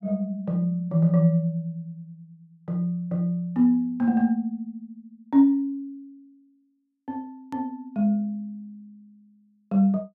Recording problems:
click at an edit; at 7.5 s

